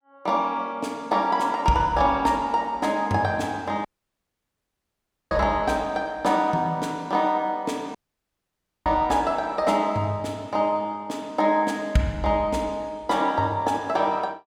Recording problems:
audio cutting out; at 4 s for 1.5 s and at 8 s for 1 s

